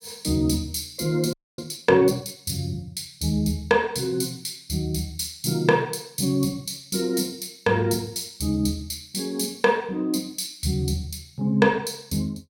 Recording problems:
audio freezing; at 1.5 s

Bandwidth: 16.5 kHz